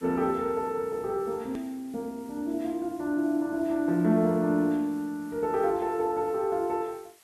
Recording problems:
hiss; slope 0 dB per octave, SNR 27 dB
click at an edit; at 1.5 s

